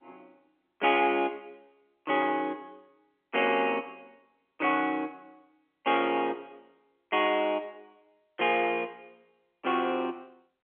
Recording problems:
phone line; 280 Hz to 3.3 kHz, G.711

